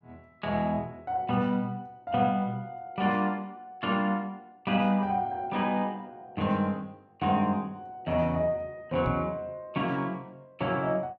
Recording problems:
knock on the microphone; at 9 s; peak 0 dB vs average level

